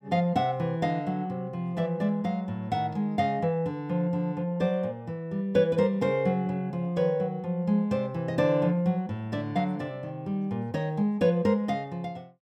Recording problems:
none

